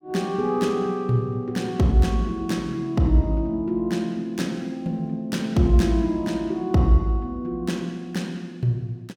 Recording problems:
none

